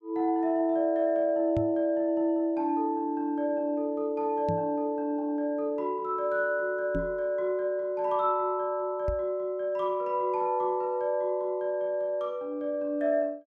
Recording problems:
microphone thump; 4 times, first at 1.5 s; peak -1 dB vs average level

